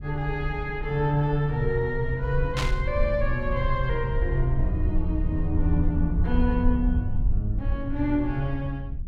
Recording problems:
rumble; below 66 Hz, SNR 3 dB
static burst; at 2.5 s; peak +2 dB vs average level

